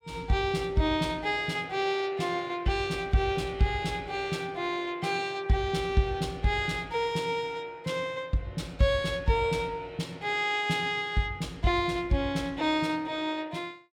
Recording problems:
none

